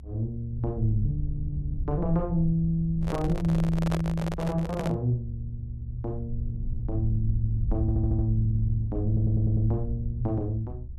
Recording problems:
low-frequency rumble; below 76 Hz, SNR 6 dB
handling noise; from 3 to 5 s; peak 0 dB vs average level
audio stuttering; at 8 s and at 9 s

